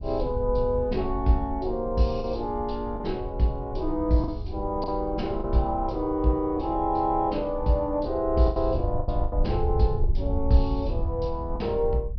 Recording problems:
treble cut off; nothing above 5.5 kHz
low-frequency rumble; below 76 Hz, SNR 7 dB
lost packets; 4% of the sound replaced, filled with the last packet

